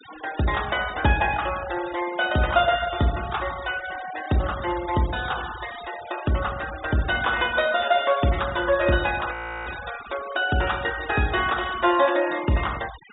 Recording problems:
treble cut off; nothing above 4 kHz
noise reduction artefacts; signal-to-artefact ratio 14 dB
frozen audio; at 9.5 s

